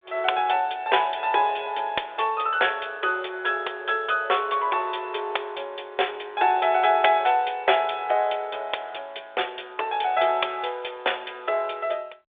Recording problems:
phone line; 340 Hz to 3.6 kHz, G.726

